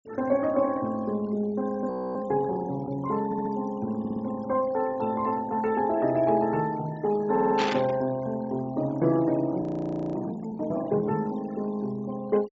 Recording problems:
treble cut off; nothing above 8 kHz
noise reduction artefacts; signal-to-artefact ratio 21 dB
frozen audio; at 2 s and at 9.5 s for 0.5 s
stutter; at 3.5 s, at 4 s and at 7.5 s
static burst; at 7.5 s; peak +1 dB vs average level

